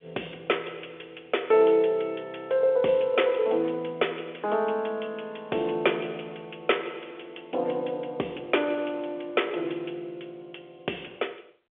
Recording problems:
telephone audio; 300 Hz to 3.5 kHz, G.711

